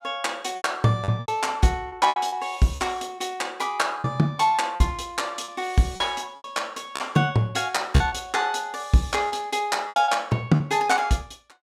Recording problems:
packet loss; 8% of the sound replaced, filled with repeated pitch periods

